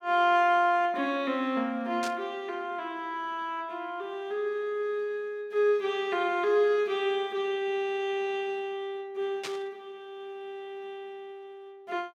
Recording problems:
static burst; at 2 s and at 9.5 s; peak -4 dB vs average level

